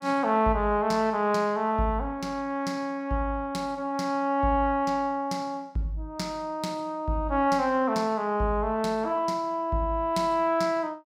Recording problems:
none

